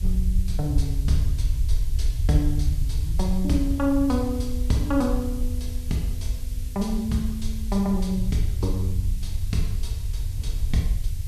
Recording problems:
background hiss; slope +6 dB per octave, SNR 18 dB
low-frequency rumble; below 72 Hz, SNR 1 dB
wind noise; below 170 Hz, SNR 19 dB

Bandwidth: 14 kHz